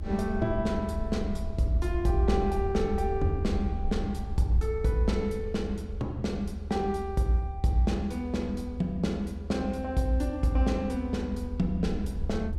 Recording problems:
low-frequency rumble; below 78 Hz, SNR 7 dB

